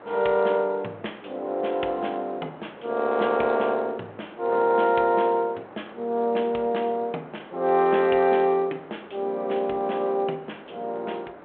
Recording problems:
telephone audio; 260 Hz to 3.3 kHz, G.726
wind on the microphone; below 1.1 kHz, SNR 20 dB

